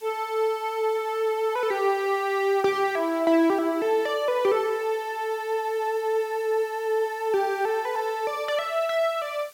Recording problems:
background hiss; slope +1 dB per octave, SNR 25 dB

